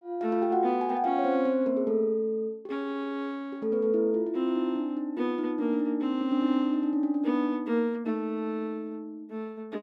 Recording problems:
none

